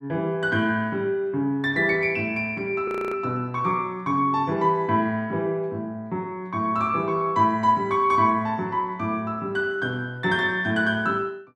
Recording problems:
audio freezing; at 3 s

